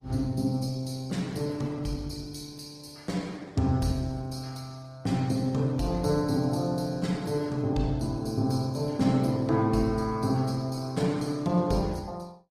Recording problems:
lossy codec; Opus, log-spectral distance 4 dB, nothing above 15.5 kHz

